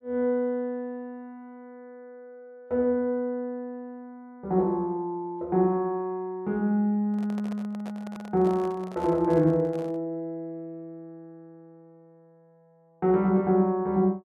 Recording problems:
handling noise; from 7 to 10 s; peak -11 dB vs average level

